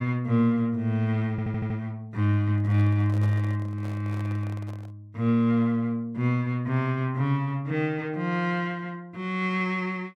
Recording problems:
audio stuttering; at 1.5 s
handling noise; from 2.5 to 5 s; peak -11 dB vs average level

